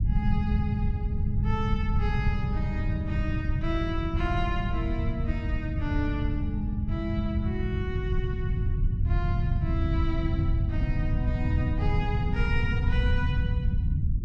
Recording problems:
rumble; below 120 Hz, SNR -5 dB

